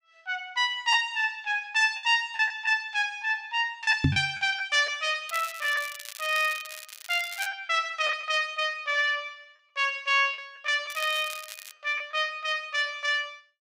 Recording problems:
packet loss; 4% of the sound replaced, filled with the last packet
microphone bump; at 4 s; peak +7 dB vs average level
crackle; from 5.5 to 7.5 s and at 11 s; loose cable, SNR 14 dB

